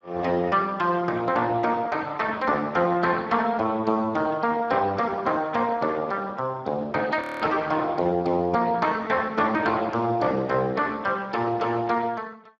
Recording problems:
lossy codec; Speex, log-spectral distance 3 dB
audio freezing; at 7 s

